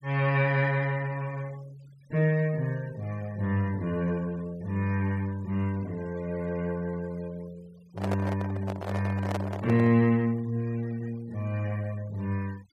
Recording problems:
noise reduction artefacts; signal-to-artefact ratio 24 dB
microphone handling noise; from 8 to 10 s; peak 0 dB vs average level

